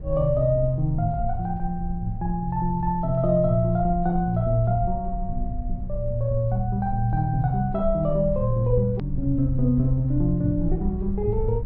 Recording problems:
treble cut off; nothing above 5.5 kHz
rumble; below 64 Hz, SNR 9 dB
click at an edit; at 9 s

